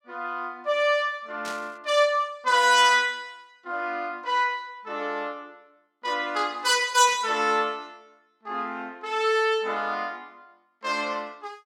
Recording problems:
static burst; at 1.5 s and at 7 s; peak -9 dB vs average level

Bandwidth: 16.5 kHz